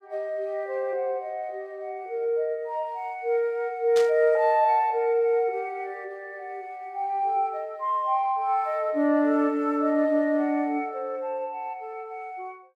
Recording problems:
burst of static; at 4 s; peak -5 dB vs average level

